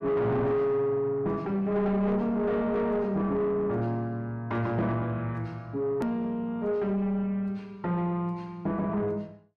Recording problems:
distorted audio; soft clipping, signal-to-distortion ratio 10 dB
click at an edit; at 6 s

